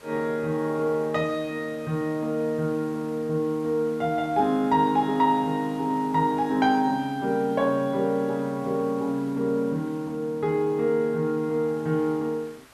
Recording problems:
background hiss; SNR 24 dB

